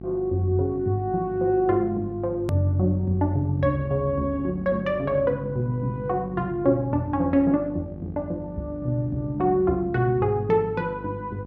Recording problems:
electrical hum; 50 Hz, harmonics up to 850 Hz, SNR 15 dB
edit click; at 2.5 s

